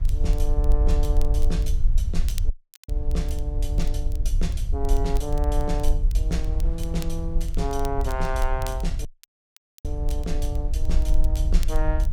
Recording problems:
hum; 50 Hz, harmonics up to 350 Hz, SNR 12 dB
rumble; below 52 Hz, strongest tone 20 Hz, SNR -6 dB
wind on the microphone; below 570 Hz, SNR 22 dB
crackling; vinyl, SNR 16 dB
audio cutting out; at 2.5 s and at 9 s for 1 s

